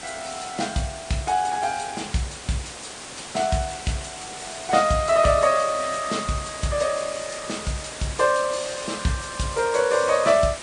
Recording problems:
lossy codec; MP3, then Vorbis, log-spectral distance 13 dB, nothing above 9.5 kHz
background hiss; slope -2 dB per octave, SNR 11 dB

